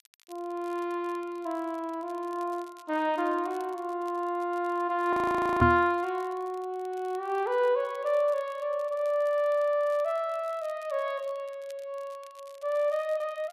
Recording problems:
crackling; vinyl, SNR 28 dB
frozen audio; at 5 s
knock on the microphone; at 5.5 s; peak +8 dB vs average level

